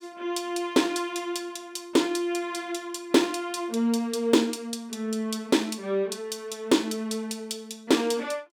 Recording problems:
none

